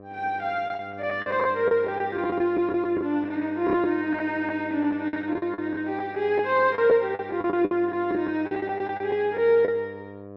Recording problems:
hum; 50 Hz, harmonics up to 1.3 kHz, SNR 17 dB
lost packets; 11% of the sound replaced, filled with the last packet

